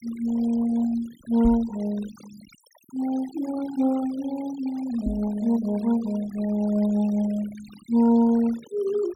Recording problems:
denoising artefacts; signal-to-artefact ratio 21 dB
microphone bump; at 1.5 s and at 5 s; peak 0 dB vs average level

